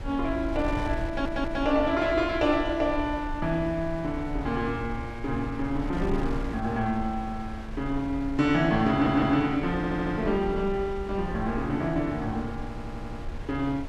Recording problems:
wind on the microphone; below 96 Hz, SNR 11 dB
stutter; 4 times, first at 1 s

